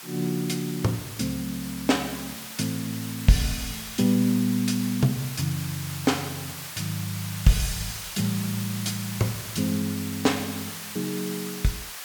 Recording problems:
hiss; SNR 8 dB

